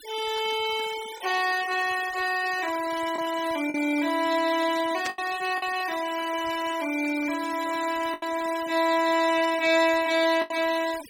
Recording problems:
denoising artefacts; signal-to-artefact ratio 14 dB
lost packets; 3% of the sound replaced, filled with the last packet
burst of static; at 5 s; peak -4 dB vs average level

